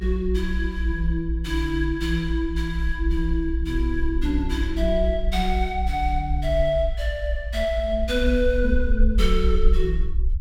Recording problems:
low-frequency rumble; below 58 Hz, SNR 1 dB

